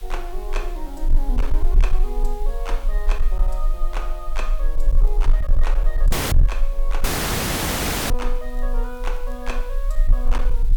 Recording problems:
distorted audio; hard clipping, uneven, signal-to-distortion ratio 11 dB
hiss; slope 0 dB per octave, SNR 15 dB
low-frequency rumble; below 34 Hz, strongest tone 22 Hz, SNR -9 dB
crackling; at 5 s and at 8.5 s; loose cable, SNR 26 dB
dropout; at 6 s and at 7 s for 1 s

